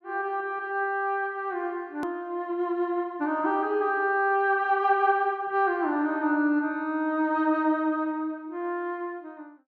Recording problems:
hard cut with a click; at 2 s

